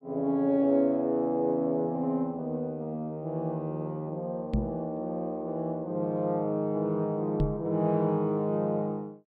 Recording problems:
knock on the microphone; at 4.5 s and at 7.5 s; peak +5 dB vs average level

